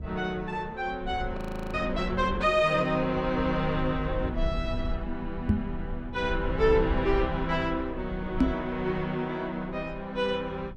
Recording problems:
rumble; below 82 Hz, SNR 9 dB
audio freezing; at 1.5 s
knock on the microphone; at 5.5 s and at 8.5 s; peak +9 dB vs average level

